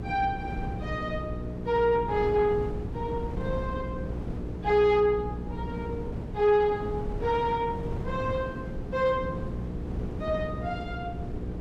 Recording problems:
distortion; soft clipping, signal-to-distortion ratio 11 dB
hum; 60 Hz, harmonics up to 480 Hz, SNR 10 dB
wind noise; below 270 Hz, SNR 9 dB
packet loss; 0.4% of the sound replaced, filled with the last packet

